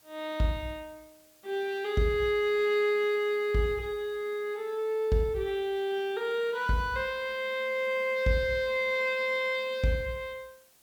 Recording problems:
hiss; slope -1 dB per octave, SNR 29 dB

